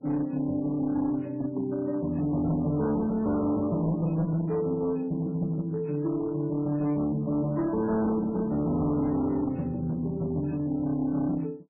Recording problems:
codec artefacts; MP3, log-spectral distance 2 dB, nothing above 2.5 kHz
distortion; hard clipping, uneven, signal-to-distortion ratio 11 dB

